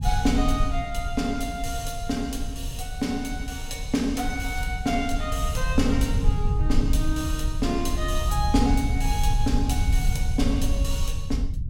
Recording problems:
rumble; below 74 Hz, SNR 0 dB

